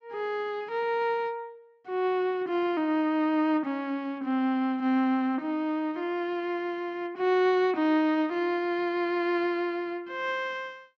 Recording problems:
none

